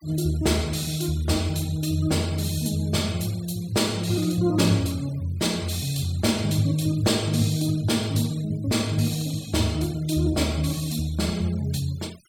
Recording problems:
denoising artefacts; signal-to-artefact ratio 20 dB

